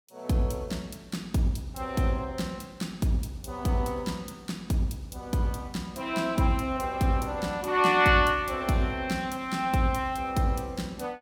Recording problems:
none

